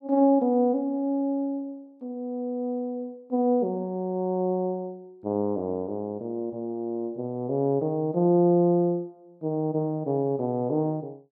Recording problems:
none

